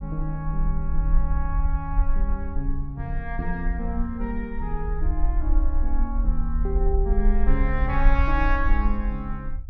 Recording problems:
low-frequency rumble; below 46 Hz, SNR -3 dB

